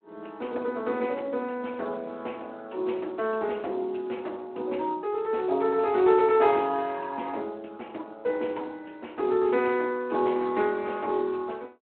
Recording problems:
telephone audio; 280 Hz to 3.3 kHz, Speex

